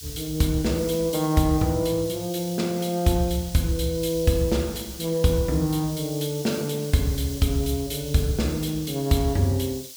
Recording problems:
background hiss; SNR 13 dB

